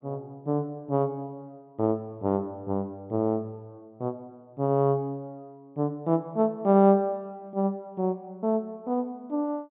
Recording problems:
treble missing; nothing above 4 kHz

